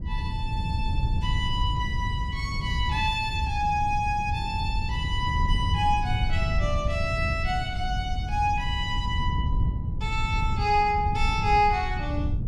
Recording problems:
wind noise; below 110 Hz, SNR 2 dB

